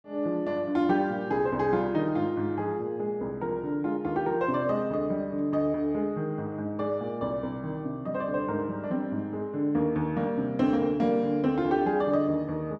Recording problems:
none

